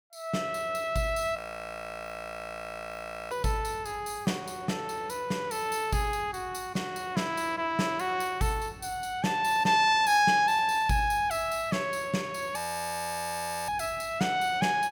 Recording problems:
frozen audio; at 1.5 s for 2 s and at 13 s for 1 s

